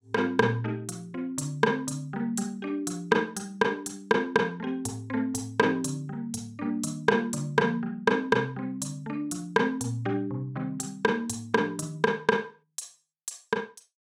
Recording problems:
none

